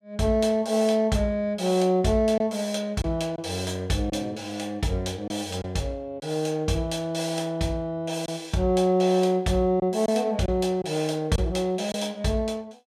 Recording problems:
packet loss; 2% of the sound replaced, filled with silence

